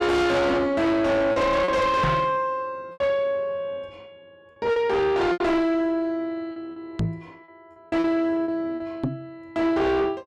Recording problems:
distortion; soft clipping, signal-to-distortion ratio 7 dB
packet loss; 6% of the sound replaced, filled with repeated pitch periods
microphone thump; at 2 s, at 7 s and at 9 s; peak +5 dB vs average level

